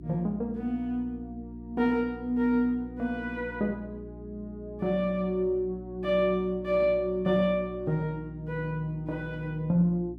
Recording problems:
electrical hum; 60 Hz, harmonics up to 360 Hz, SNR 15 dB

